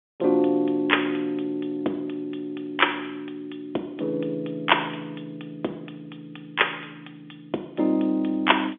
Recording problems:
telephone audio; 240 Hz to 3.5 kHz, G.711

